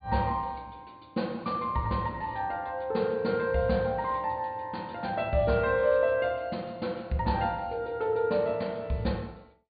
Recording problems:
treble missing; nothing above 4.7 kHz

